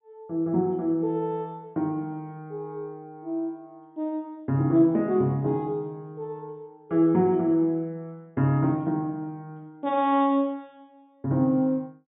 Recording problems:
treble cut off; nothing above 4 kHz

